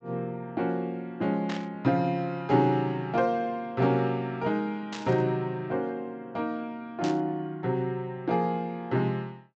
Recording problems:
treble cut off; nothing above 8 kHz
static burst; at 1.5 s, at 5 s and at 7 s; peak -5 dB vs average level

